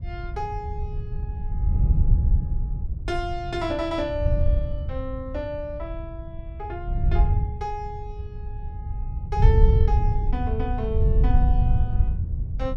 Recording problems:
wind on the microphone; below 88 Hz, SNR -6 dB

